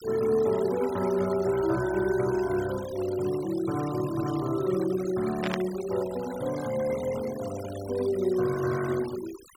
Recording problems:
noise reduction artefacts; signal-to-artefact ratio 16 dB
burst of static; at 5.5 s; peak 0 dB vs average level

